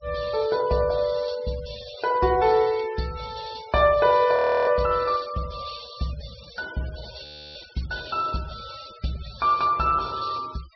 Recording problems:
low-pass filter; nothing above 5.5 kHz
noise reduction artefacts; signal-to-artefact ratio 20 dB
audio freezing; at 4.5 s and at 7 s

